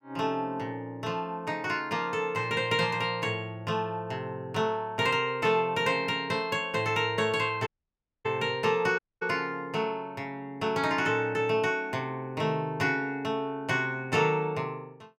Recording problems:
audio cutting out; at 7.5 s for 0.5 s and at 9 s

